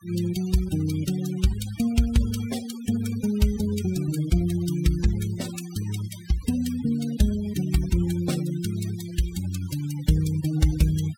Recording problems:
noise reduction artefacts; signal-to-artefact ratio 16 dB

